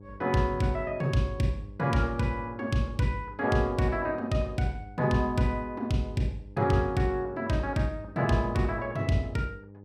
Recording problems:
hum; 50 Hz, harmonics up to 900 Hz, SNR 20 dB

